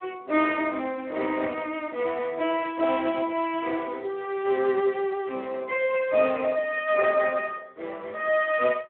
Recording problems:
phone line; 280 Hz to 3.6 kHz, Speex

